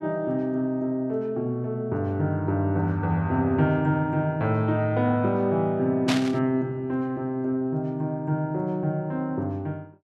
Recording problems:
burst of static; at 6 s; peak +2 dB vs average level

